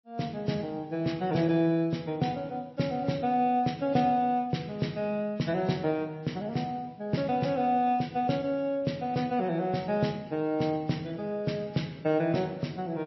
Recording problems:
lossy compression; MP3, log-spectral distance 2 dB, nothing above 5.7 kHz

